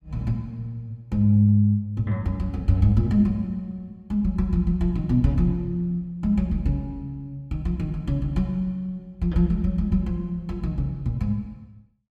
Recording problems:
none

